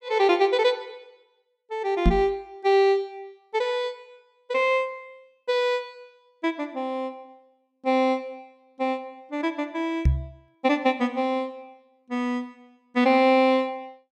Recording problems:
knock on the microphone; at 2 s and at 10 s; peak +7 dB vs average level

